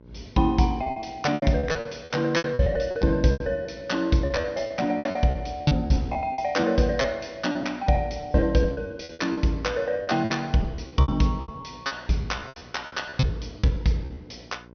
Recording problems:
treble cut off; nothing above 6.2 kHz
hum; 60 Hz, harmonics up to 1.5 kHz, SNR 25 dB
lost packets; 18% of the sound replaced, filled with repeated pitch periods

